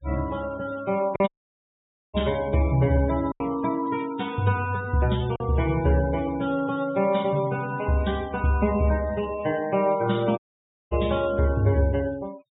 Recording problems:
low-pass filter; nothing above 4 kHz
noise reduction artefacts; signal-to-artefact ratio 19 dB
lost packets; 1.3% of the sound replaced, filled with silence
audio cutting out; at 1.5 s for 1 s and at 10 s for 0.5 s

